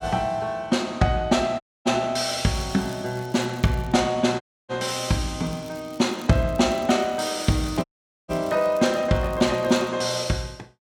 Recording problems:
dropout; at 1.5 s, at 4.5 s and at 8 s
crackling; from 2.5 to 4 s and from 5.5 to 10 s; loose cable, SNR 25 dB

